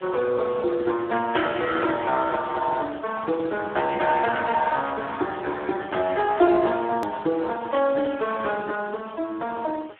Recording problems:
phone line; 260 Hz to 2.1 kHz, Speex
background hiss; SNR 27 dB
hard cut with a click; at 7 s

